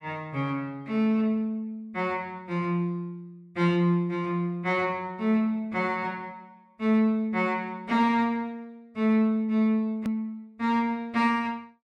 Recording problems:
click at an edit; at 10 s

